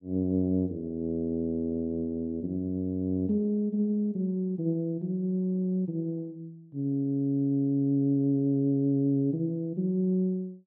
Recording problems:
none

